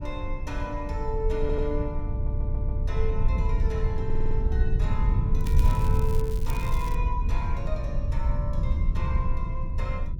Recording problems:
low-frequency rumble; below 78 Hz, SNR -7 dB
stutter; at 1.5 s, at 2 s and at 4 s
crackle; from 5.5 to 7 s; loose cable, SNR 11 dB

